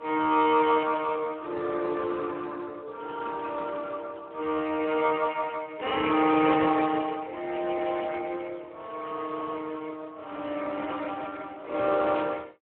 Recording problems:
phone line; 280 Hz to 2.9 kHz, Speex

